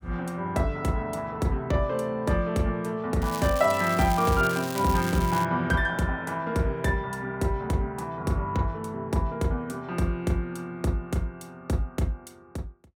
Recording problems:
crackle; from 3 to 5.5 s; loose cable, SNR 11 dB

